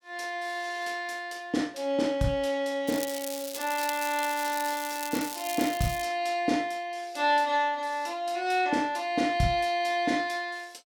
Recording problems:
crackling; from 3 to 6 s; loose cable, SNR 9 dB

